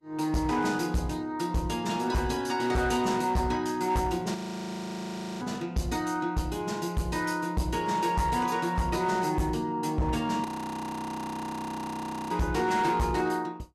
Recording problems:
lossy codec; Vorbis, log-spectral distance 2 dB, nothing above 12.7 kHz
distorted audio; hard clipping, uneven, signal-to-distortion ratio 11 dB
audio freezing; at 4.5 s for 1 s and at 10 s for 2 s

